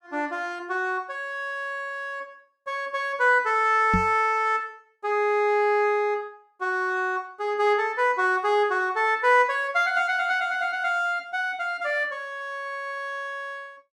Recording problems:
microphone bump; at 4 s; peak +3 dB vs average level

